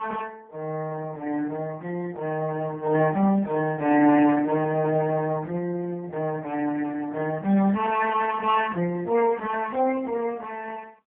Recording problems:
phone line; 170 Hz to 3.3 kHz, AMR-NB, then MP3

